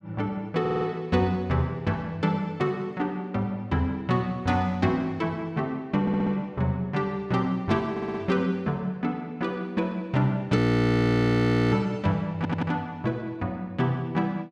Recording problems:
audio stuttering; 4 times, first at 0.5 s
frozen audio; at 11 s for 1 s

